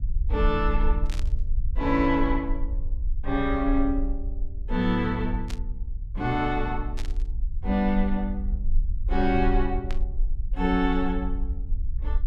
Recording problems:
low-frequency rumble; below 48 Hz, SNR 4 dB
static burst; 4 times, first at 1 s; peak -8 dB vs average level

